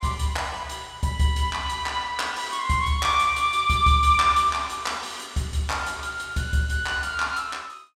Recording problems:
none

